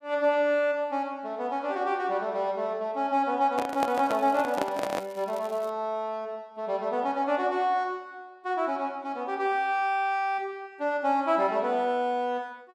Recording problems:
handling noise; from 3.5 to 5 s; peak +1 dB vs average level
crackling; from 3.5 to 5.5 s; loose cable, SNR 24 dB

